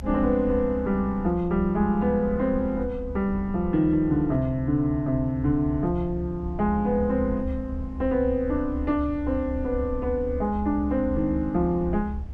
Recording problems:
rumble; below 74 Hz, strongest tone 68 Hz, SNR 10 dB

